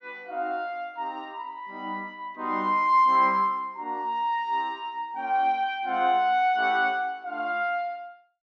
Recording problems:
none

